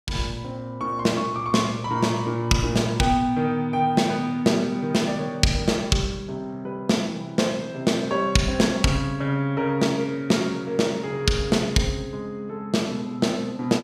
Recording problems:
none

